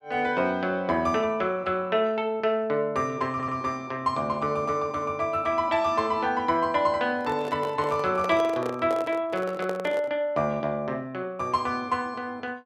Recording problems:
stutter; at 3.5 s
microphone handling noise; from 7 to 10 s; peak -3 dB vs average level

